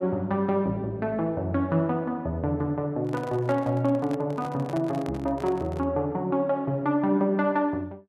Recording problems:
handling noise; from 3 to 6 s; peak -8 dB vs average level

